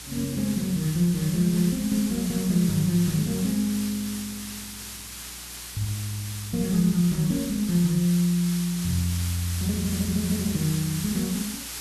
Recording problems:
electrical hum; 60 Hz, harmonics up to 420 Hz, SNR 25 dB
background hiss; slope +2 dB per octave, SNR 9 dB

